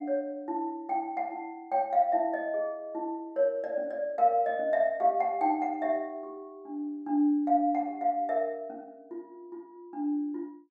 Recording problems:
none

